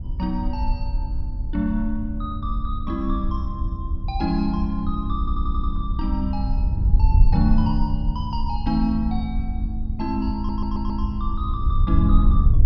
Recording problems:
treble cut off; nothing above 5.5 kHz
wind noise; below 70 Hz, SNR -2 dB
audio stuttering; at 5 s and at 10 s

